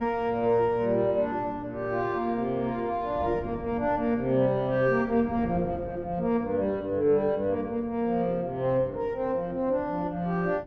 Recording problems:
wind on the microphone; below 340 Hz, SNR 18 dB

